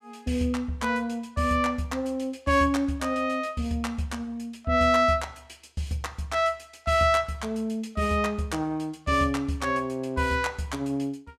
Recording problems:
none

